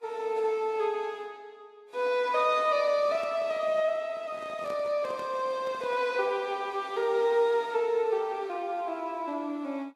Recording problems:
lossy compression; Vorbis, log-spectral distance 2 dB, nothing above 12.3 kHz
microphone handling noise; from 3 to 6 s; peak -10 dB vs average level

